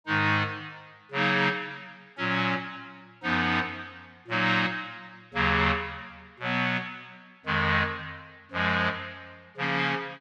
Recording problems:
none

